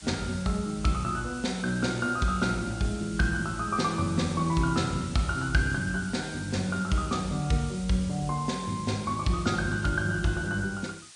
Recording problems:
lossy codec; MP3, log-spectral distance 9 dB, nothing above 9.2 kHz
hiss; slope +3 dB per octave, SNR 16 dB

